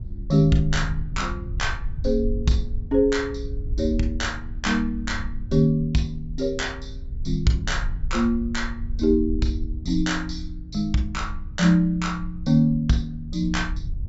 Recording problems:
treble missing; nothing above 8 kHz
rumble; below 68 Hz, SNR 9 dB

